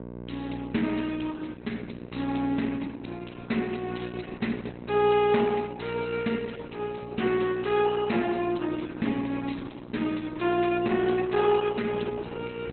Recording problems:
lossy compression; Opus, log-spectral distance 6 dB, nothing above 4 kHz
hum; 60 Hz, harmonics up to 1.1 kHz, SNR 11 dB

